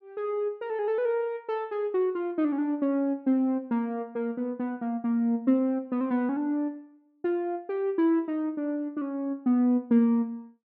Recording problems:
none

